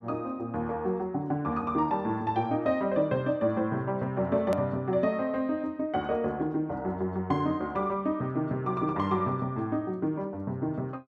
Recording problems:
edit click; at 4.5 s

